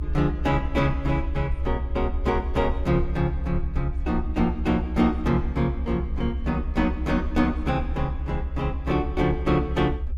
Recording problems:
rumble; below 70 Hz, SNR 5 dB

